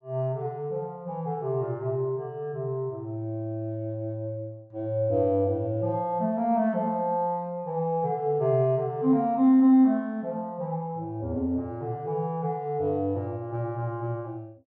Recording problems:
none

